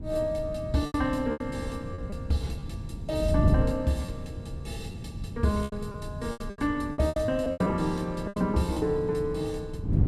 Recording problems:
wind on the microphone; below 170 Hz, SNR 6 dB
packet loss; 10% of the sound replaced, filled with repeated pitch periods

